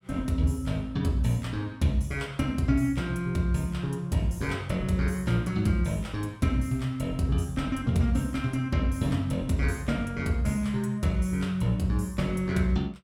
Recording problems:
none

